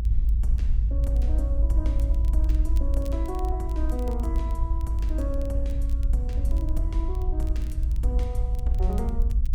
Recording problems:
rumble; below 56 Hz, strongest tone 54 Hz, SNR -10 dB
crackle; vinyl, SNR 20 dB

